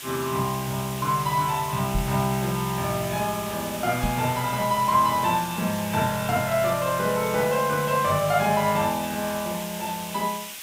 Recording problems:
background hiss; SNR 10 dB
microphone thump; at 2 s and at 4 s; peak 0 dB vs average level

